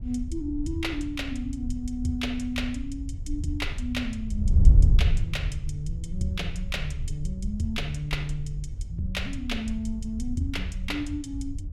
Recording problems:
wind on the microphone; below 78 Hz, SNR -2 dB

